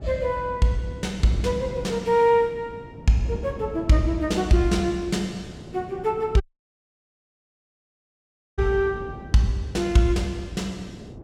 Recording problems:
wind noise; below 360 Hz, SNR 16 dB
dropout; at 6.5 s for 2 s

